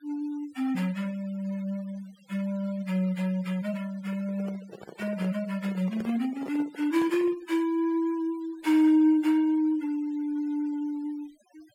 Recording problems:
noise reduction artefacts; signal-to-artefact ratio 24 dB
microphone handling noise; from 4 to 7.5 s; peak -8 dB vs average level

